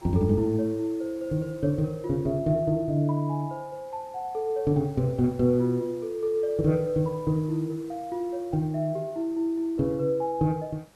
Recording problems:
background hiss; slope -4 dB per octave, SNR 27 dB

